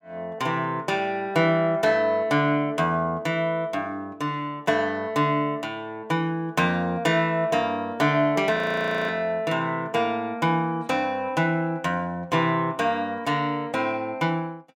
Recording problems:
audio freezing; at 8.5 s for 0.5 s

